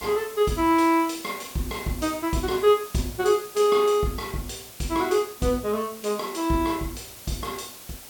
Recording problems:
hiss; slope -1 dB per octave, SNR 16 dB

